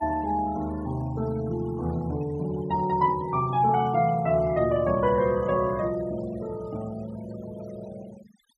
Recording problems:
noise reduction artefacts; signal-to-artefact ratio 20 dB

